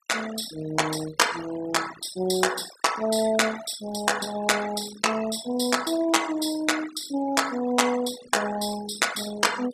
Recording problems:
denoising artefacts; signal-to-artefact ratio 13 dB

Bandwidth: 14.5 kHz